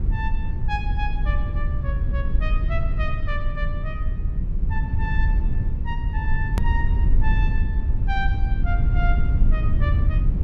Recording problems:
rumble; below 76 Hz, SNR -9 dB
hard cut with a click; at 6.5 s

